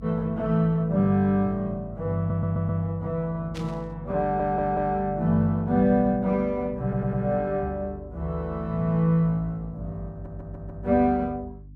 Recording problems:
hum; 50 Hz, harmonics up to 300 Hz, SNR 18 dB
stutter; 4 times, first at 2 s
static burst; at 3.5 s; peak -11 dB vs average level

